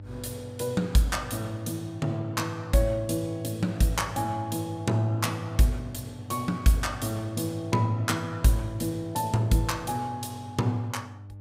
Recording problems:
hum; 50 Hz, harmonics up to 600 Hz, SNR 16 dB

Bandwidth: 15.5 kHz